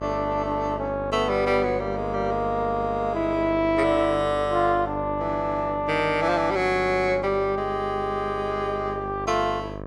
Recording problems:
electrical hum; 50 Hz, harmonics up to 1.7 kHz, SNR 11 dB

